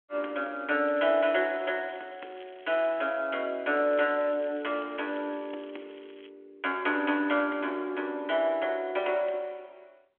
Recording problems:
phone line; 260 Hz to 3.4 kHz, G.726
crackle; from 1 to 3 s and from 4 to 6 s; loose cable, SNR 27 dB

